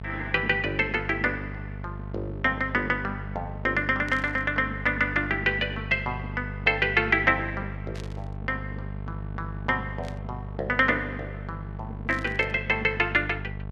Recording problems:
hum; 50 Hz, harmonics up to 1.1 kHz, SNR 11 dB
static burst; 4 times, first at 4 s; peak -14 dB vs average level

